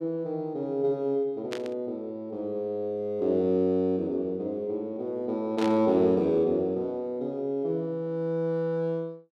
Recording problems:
burst of static; at 1.5 s and at 5.5 s; peak -5 dB vs average level

